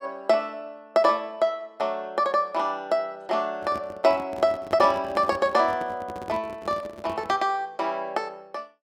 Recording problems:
handling noise; from 3.5 to 7.5 s; peak -9 dB vs average level

